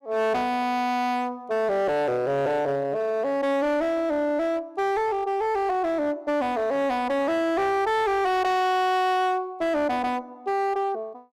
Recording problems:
distorted audio; hard clipping, signal-to-distortion ratio 8 dB

